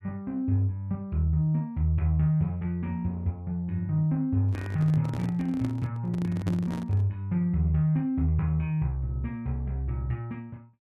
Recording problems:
handling noise; from 4.5 to 7 s; peak -2 dB vs average level

